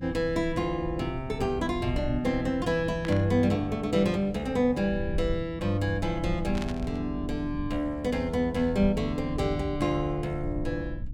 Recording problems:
hum; 60 Hz, harmonics up to 300 Hz, SNR 16 dB
low-frequency rumble; below 100 Hz, SNR 12 dB
static burst; at 3 s and at 6.5 s; peak -6 dB vs average level

